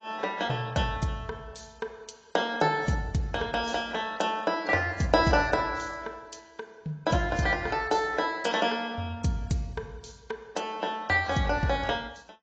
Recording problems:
codec artefacts; AAC, log-spectral distance 3 dB, nothing above 7.3 kHz

